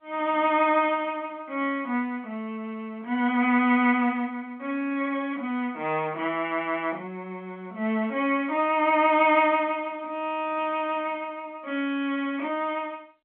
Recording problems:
phone line; 260 Hz to 3.3 kHz, G.711

